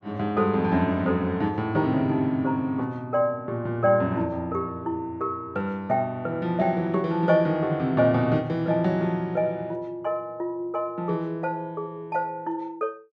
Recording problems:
none

